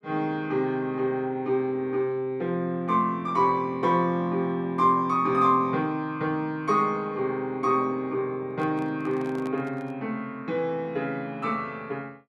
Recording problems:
handling noise; from 8.5 to 10 s; peak -11 dB vs average level

